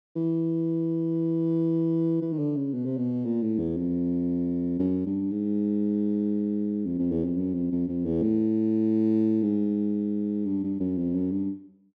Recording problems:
none

